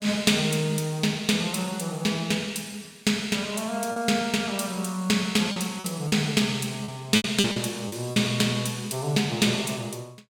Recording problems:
lost packets; 4% of the sound replaced, filled with repeated pitch periods

